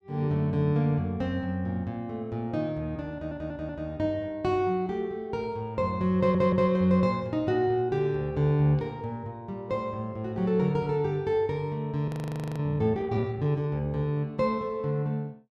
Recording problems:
audio stuttering; at 3 s and at 6 s
frozen audio; at 12 s for 0.5 s

